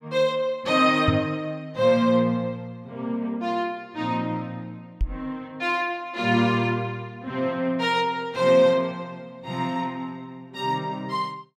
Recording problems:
microphone thump; at 1 s and at 5 s; peak +4 dB vs average level

